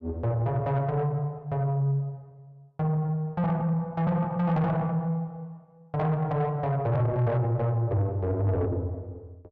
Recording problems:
distorted audio; soft clipping, signal-to-distortion ratio 10 dB

